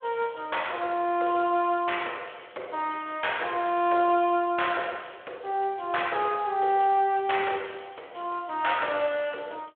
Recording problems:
telephone audio; 320 Hz to 3.4 kHz, Speex

